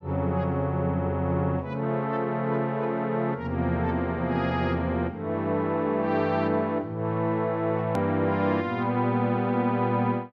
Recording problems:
click at an edit; at 8 s

